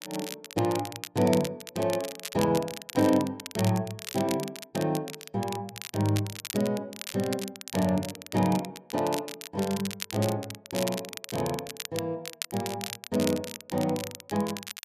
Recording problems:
crackle; vinyl, SNR 9 dB

